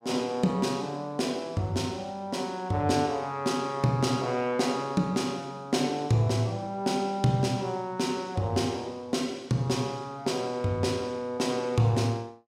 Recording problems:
none

